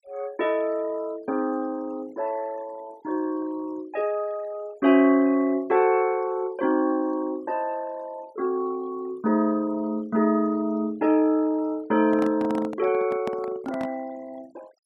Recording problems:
noise reduction artefacts; signal-to-artefact ratio 25 dB
microphone handling noise; from 12 to 14 s; peak -4 dB vs average level

